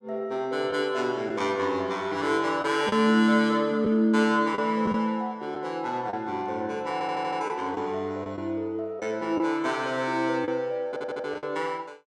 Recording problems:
lost packets; 4% of the sound replaced, filled with the last packet
stutter; at 7 s and at 11 s

